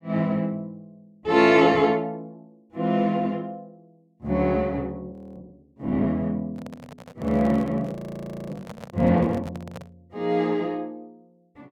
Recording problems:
frozen audio; at 5 s and at 8 s for 0.5 s
handling noise; from 6.5 to 10 s; peak -11 dB vs average level

